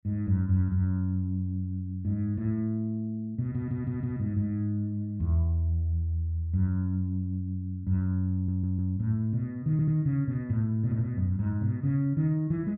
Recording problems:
stutter; at 3.5 s, at 8.5 s and at 9.5 s

